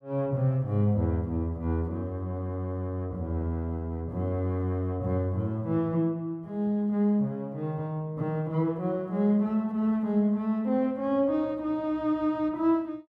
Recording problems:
none

